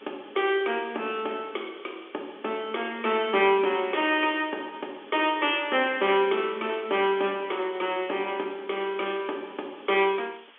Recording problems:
phone line; 260 Hz to 3.5 kHz, G.711
background hiss; SNR 26 dB

